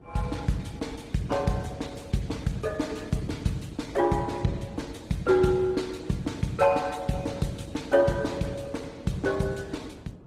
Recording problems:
lossy codec; Opus, then Opus, log-spectral distance 4 dB, nothing above 15.5 kHz
rumble; below 290 Hz, SNR 19 dB

